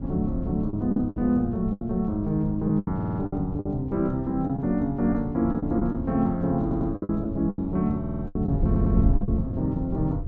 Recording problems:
treble missing; nothing above 8 kHz
wind noise; below 150 Hz, SNR 6 dB
lost packets; 10% of the sound replaced, filled with the last packet
audio stuttering; 4 times, first at 3 s

